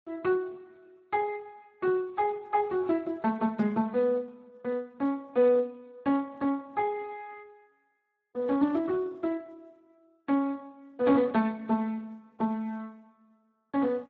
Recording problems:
lossy compression; AAC, then Speex, log-spectral distance 2 dB

